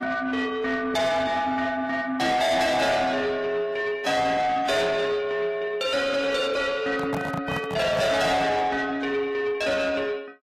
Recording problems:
lossy codec; AAC, log-spectral distance 3 dB, nothing above 14.3 kHz
distortion; soft clipping, signal-to-distortion ratio 8 dB
handling noise; from 7 to 8.5 s; peak -2 dB vs average level

